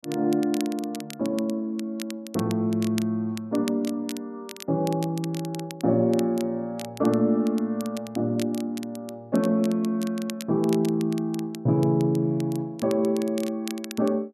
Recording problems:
crackling; vinyl, SNR 17 dB

